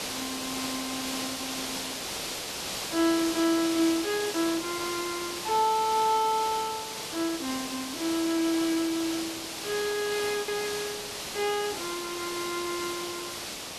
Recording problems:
background hiss; SNR 4 dB
lost packets; 2% of the sound replaced, filled with repeated pitch periods

